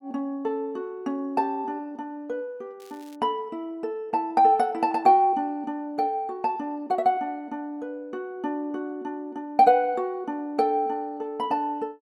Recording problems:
crackling; at 3 s; loose cable, SNR 29 dB

